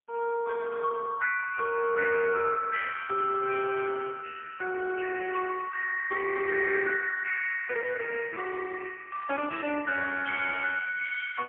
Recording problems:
telephone audio; 320 Hz to 2.3 kHz, AMR-NB, then MP3

